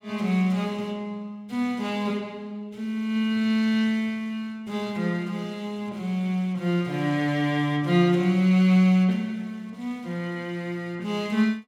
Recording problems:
none

